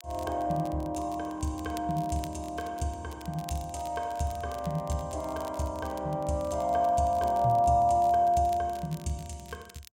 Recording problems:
crackling; vinyl, SNR 22 dB

